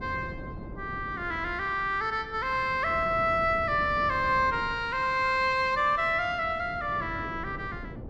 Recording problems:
wind on the microphone; below 320 Hz, SNR 15 dB

